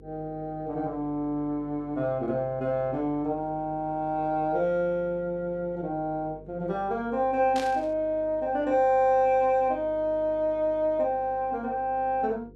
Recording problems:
electrical hum; 50 Hz, harmonics up to 500 Hz, SNR 22 dB
static burst; at 7.5 s; peak -6 dB vs average level

